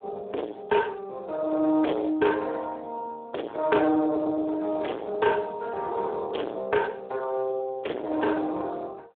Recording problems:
telephone audio; 320 Hz to 2 kHz, Speex
distorted audio; soft clipping, signal-to-distortion ratio 7 dB

